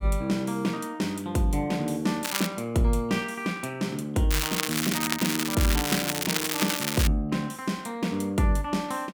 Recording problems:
crackling; at 2 s and from 4.5 to 7 s; loose cable, SNR 0 dB

